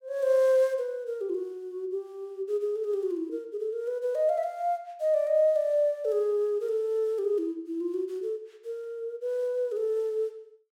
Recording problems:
none

